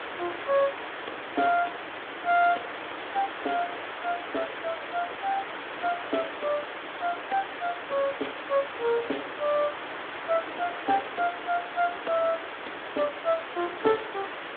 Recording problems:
phone line; 260 Hz to 3.7 kHz, Speex
hiss; SNR 6 dB

